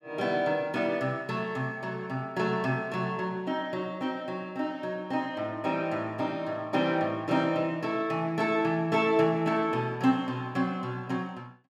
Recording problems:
none

